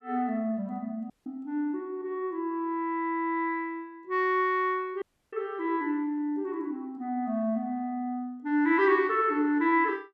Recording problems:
dropout; at 1 s and at 5 s

